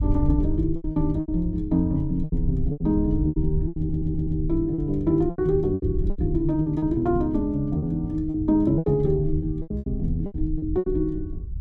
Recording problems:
rumble; below 80 Hz, SNR 7 dB
packet loss; 13% of the sound replaced, filled with repeated pitch periods
audio stuttering; at 4 s

